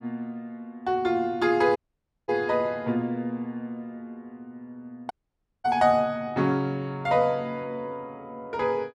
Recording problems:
dropout; at 2 s for 0.5 s and at 5 s for 0.5 s

